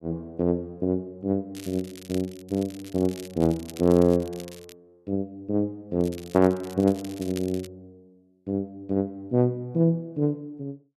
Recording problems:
crackling; from 1.5 to 4.5 s and from 6 to 7.5 s; loose cable, SNR 19 dB

